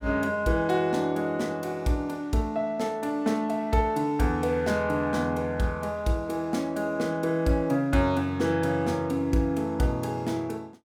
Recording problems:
none

